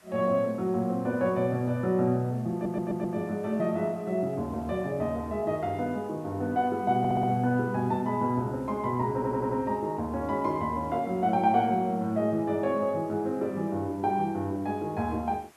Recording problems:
hiss; SNR 29 dB
stutter; at 2.5 s, at 7 s and at 9 s

